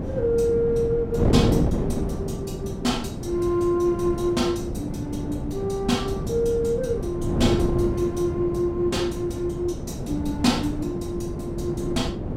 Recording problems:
wind noise; below 330 Hz, SNR 3 dB

